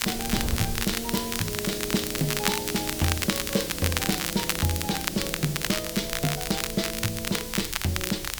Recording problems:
hiss; SNR 5 dB
wind on the microphone; below 120 Hz, SNR 12 dB
crackling; vinyl, SNR 1 dB

